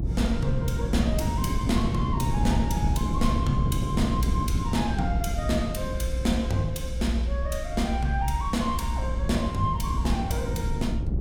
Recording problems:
low-frequency rumble; below 62 Hz, strongest tone 60 Hz, SNR 3 dB
wind noise; below 190 Hz, SNR 1 dB

